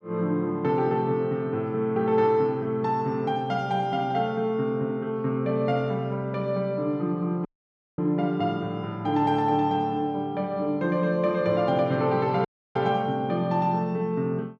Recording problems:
audio cutting out; at 7.5 s for 0.5 s and at 12 s

